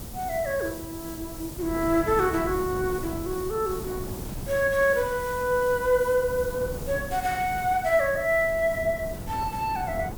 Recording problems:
background hiss; SNR 16 dB
wind noise; below 300 Hz, SNR 12 dB

